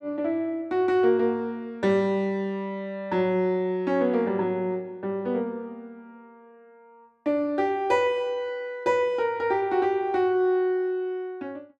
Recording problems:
none

